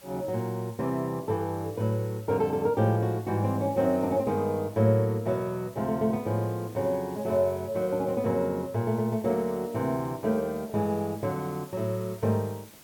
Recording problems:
hiss; slope -2 dB per octave, SNR 23 dB

